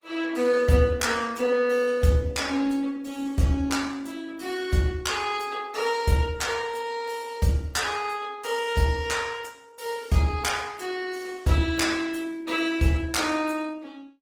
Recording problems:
lossy codec; Opus, log-spectral distance 4 dB, nothing above 19 kHz

